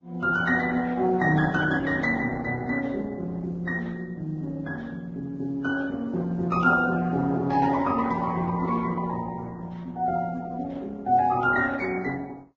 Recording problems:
codec artefacts; Opus, then Vorbis, log-spectral distance 2 dB, nothing above 7.3 kHz

